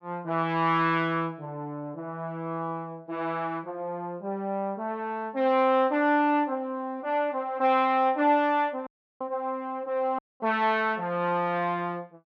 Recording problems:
audio cutting out; at 9 s and at 10 s

